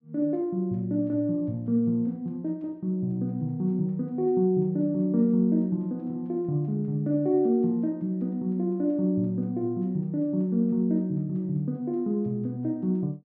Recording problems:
none

